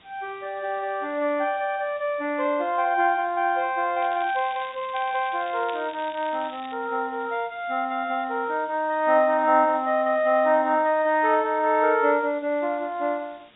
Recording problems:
low-pass filter; nothing above 4 kHz
background hiss; SNR 29 dB
crackling; from 4 to 6.5 s; loose cable, SNR 20 dB

